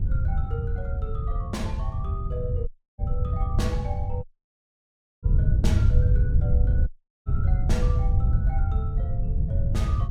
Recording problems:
electrical hum; 50 Hz, harmonics up to 700 Hz, SNR 16 dB
wind noise; below 100 Hz, SNR -11 dB
dropout; at 2.5 s, at 4 s for 1 s and at 7 s

